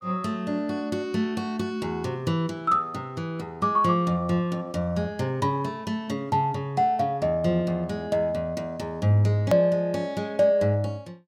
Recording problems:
click at an edit; at 9.5 s

